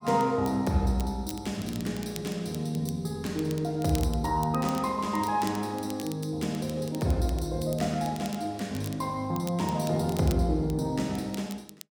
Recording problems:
crackle; vinyl, SNR 17 dB

